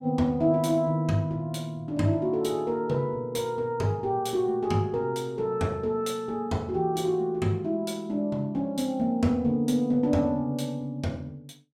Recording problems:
none

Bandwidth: 16 kHz